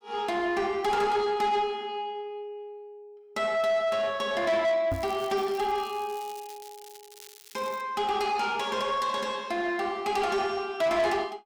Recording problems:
distorted audio; soft clipping, signal-to-distortion ratio 11 dB
crackling; from 5 to 8 s; loose cable, SNR 20 dB
microphone bump; at 5 s; peak -1 dB vs average level

